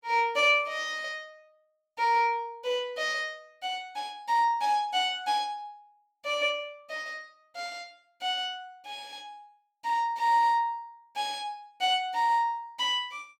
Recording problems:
none

